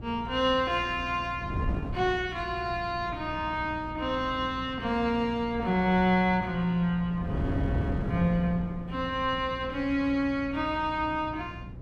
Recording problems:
hum; 60 Hz, harmonics up to 420 Hz, SNR 16 dB
wind on the microphone; below 240 Hz, SNR 10 dB

